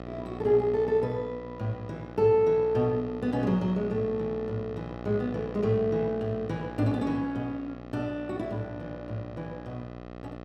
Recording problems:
hum; 60 Hz, harmonics up to 1.9 kHz, SNR 12 dB

